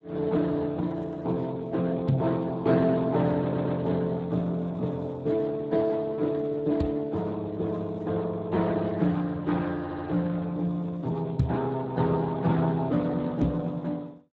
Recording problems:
lossy codec; Speex, log-spectral distance 3 dB
microphone bump; 4 times, first at 2 s; peak +6 dB vs average level
audio stuttering; at 3.5 s and at 10 s

